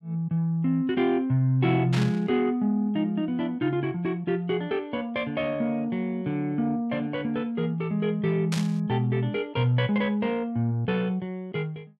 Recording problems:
burst of static; at 2 s and at 8.5 s; peak -2 dB vs average level

